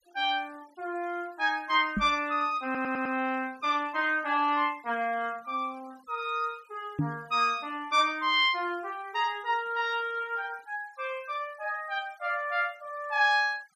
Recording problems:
denoising artefacts; signal-to-artefact ratio 28 dB
knock on the microphone; at 2 s and at 7 s; peak +4 dB vs average level
audio stuttering; at 2.5 s

